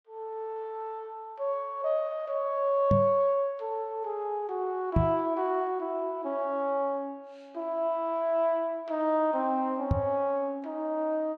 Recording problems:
microphone thump; at 3 s, at 5 s and at 10 s; peak +7 dB vs average level

